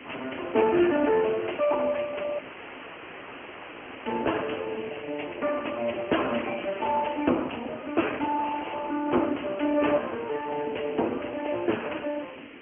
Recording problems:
phone line; 240 Hz to 3 kHz, Speex
background hiss; SNR 19 dB
wind on the microphone; below 430 Hz, SNR 19 dB
dropout; at 2.5 s for 1.5 s

